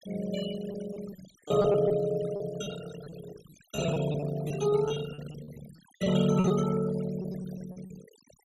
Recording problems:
noise reduction artefacts; signal-to-artefact ratio 15 dB
packet loss; 11% of the sound replaced, filled with repeated pitch periods

